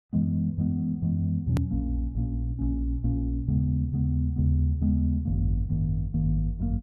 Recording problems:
edit click; at 1.5 s

